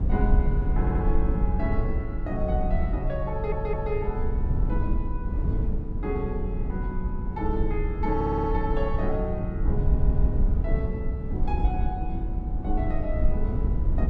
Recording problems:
low-frequency rumble; below 76 Hz, SNR -4 dB
stutter; 4 times, first at 1 s

